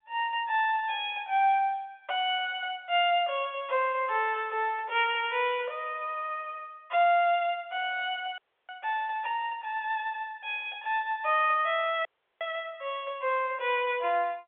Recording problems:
phone line; 370 Hz to 3.6 kHz, G.711
audio cutting out; at 8.5 s and at 12 s

